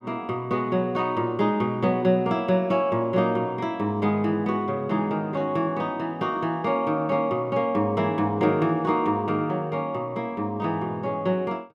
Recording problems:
none

